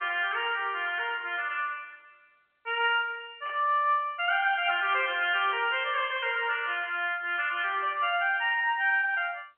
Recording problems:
telephone audio; 370 Hz to 3.2 kHz, G.711
static burst; at 3.5 s and at 5.5 s; peak -16 dB vs average level

